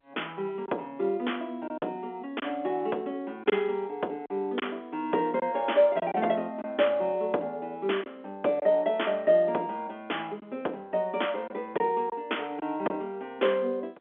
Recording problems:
phone line; 260 Hz to 3.4 kHz, G.711
packet loss; 3% of the sound replaced, filled with silence

